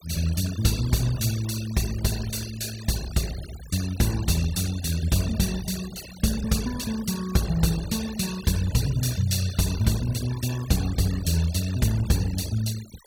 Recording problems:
noise reduction artefacts; signal-to-artefact ratio 14 dB

